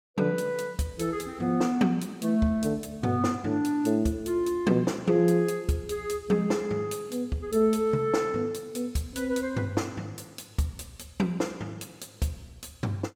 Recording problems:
none

